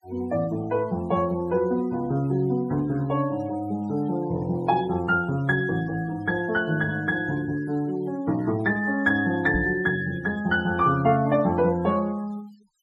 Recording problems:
denoising artefacts; signal-to-artefact ratio 24 dB
knock on the microphone; at 9.5 s; peak 0 dB vs average level

